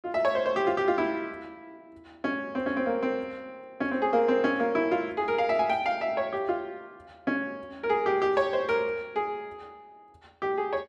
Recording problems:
none

